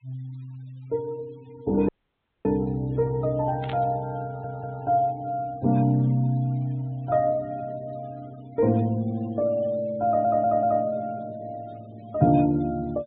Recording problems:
treble missing; nothing above 4 kHz
noise reduction artefacts; signal-to-artefact ratio 27 dB
audio cutting out; at 2 s for 0.5 s
static burst; at 3.5 s; peak -9 dB vs average level
stutter; at 4.5 s and at 10 s

